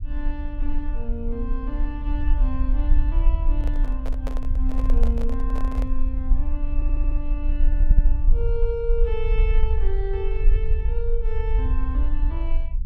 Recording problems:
rumble; below 44 Hz, strongest tone 20 Hz, SNR -9 dB
handling noise; from 3.5 to 6 s; peak +2 dB vs average level
stutter; at 7 s and at 8 s

